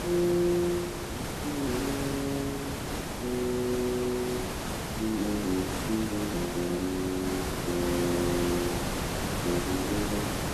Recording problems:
hiss; slope -5 dB per octave, SNR 2 dB

